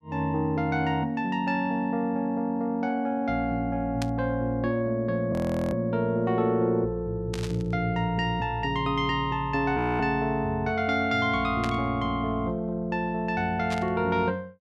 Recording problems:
static burst; 4 times, first at 4 s; peak -5 dB vs average level
audio freezing; at 5.5 s and at 10 s

